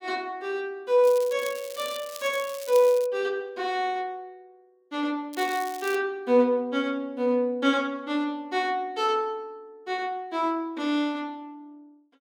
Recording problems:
crackling; from 1 to 3 s and at 5.5 s; loose cable, SNR 15 dB

